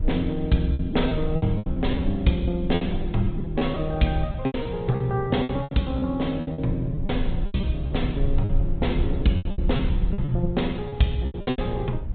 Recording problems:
treble missing; nothing above 4 kHz
lossy compression; Opus, log-spectral distance 2 dB
low-frequency rumble; below 64 Hz, strongest tone 22 Hz, SNR 7 dB
wind on the microphone; below 270 Hz, SNR 17 dB
lost packets; 14% of the sound replaced, filled with repeated pitch periods

